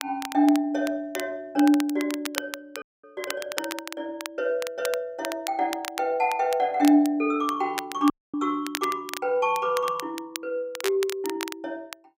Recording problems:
crackle; vinyl, SNR 11 dB
dropout; at 3 s and at 8 s

